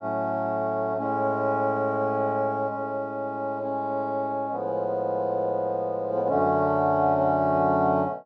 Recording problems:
none

